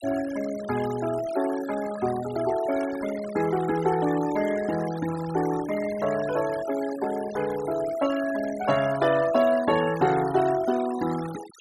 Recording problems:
denoising artefacts; signal-to-artefact ratio 15 dB

